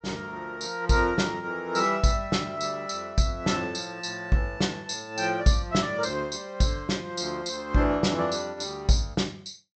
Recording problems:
treble cut off; nothing above 8 kHz

